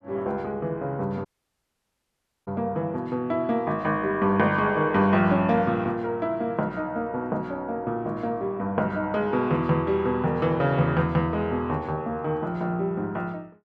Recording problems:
audio cutting out; at 1.5 s for 1 s

